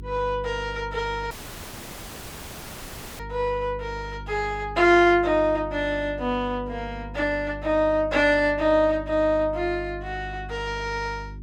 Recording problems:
hum; 50 Hz, harmonics up to 400 Hz, SNR 15 dB
audio cutting out; at 1.5 s for 2 s

